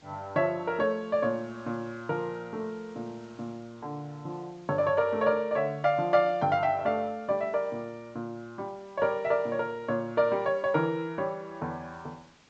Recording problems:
treble missing; nothing above 8 kHz
background hiss; slope -2 dB per octave, SNR 29 dB

